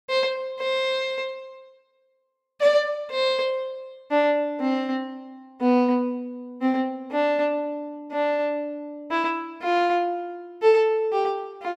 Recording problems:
none

